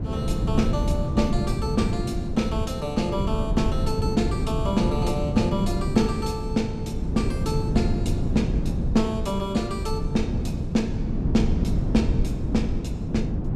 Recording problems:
wind on the microphone; below 190 Hz, SNR 0 dB

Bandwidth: 14 kHz